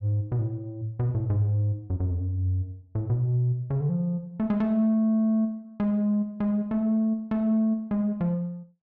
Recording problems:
none

